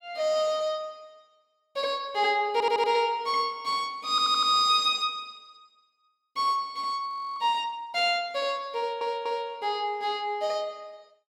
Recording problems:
audio stuttering; at 2.5 s, at 4 s and at 9 s
frozen audio; at 7 s

